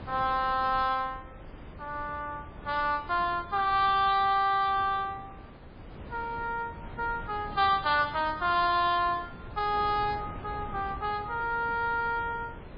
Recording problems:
lossy compression; MP3, log-spectral distance 2 dB, nothing above 4.4 kHz
wind on the microphone; below 530 Hz, SNR 17 dB

